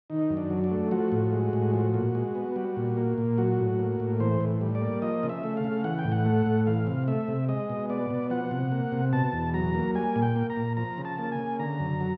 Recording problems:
none

